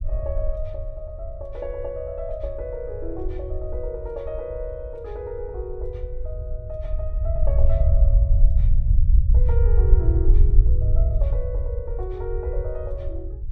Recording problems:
low-frequency rumble; below 64 Hz, SNR -10 dB

